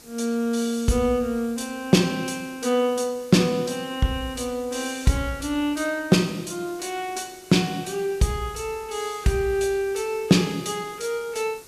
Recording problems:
background hiss; SNR 22 dB

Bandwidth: 14.5 kHz